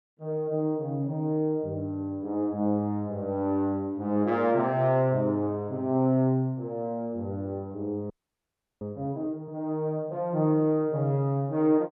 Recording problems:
audio freezing; at 8 s for 0.5 s

